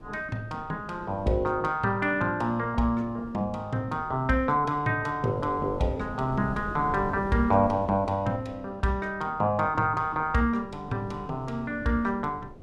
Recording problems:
wind on the microphone; below 350 Hz, SNR 16 dB

